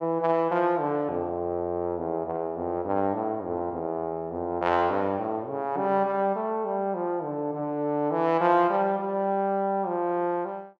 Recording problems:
none

